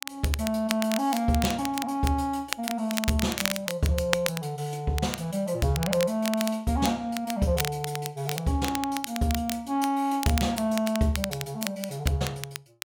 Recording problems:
crackle; vinyl, SNR 7 dB

